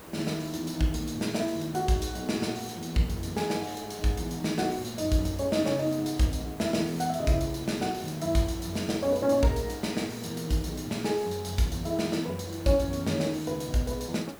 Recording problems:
background hiss; slope -6 dB per octave, SNR 16 dB

